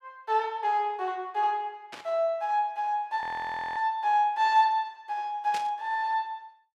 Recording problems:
burst of static; at 2 s and at 5.5 s; peak -7 dB vs average level
audio freezing; at 3 s for 0.5 s

